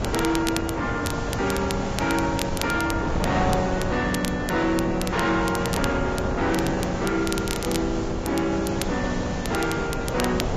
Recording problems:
lossy compression; Vorbis, log-spectral distance 8 dB
distorted audio; soft clipping, signal-to-distortion ratio 10 dB
hiss; slope +1 dB per octave, SNR 16 dB
wind noise; below 660 Hz, SNR 4 dB
crackling; vinyl, SNR 11 dB

